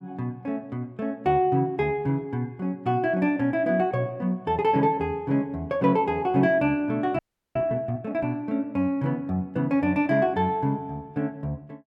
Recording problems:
audio freezing; at 7 s

